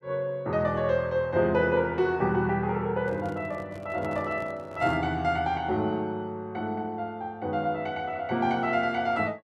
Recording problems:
handling noise; from 3 to 5 s; peak -8 dB vs average level

